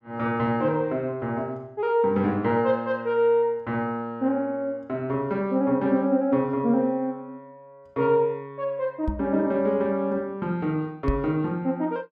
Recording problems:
microphone thump; at 9 s and at 11 s; peak +2 dB vs average level

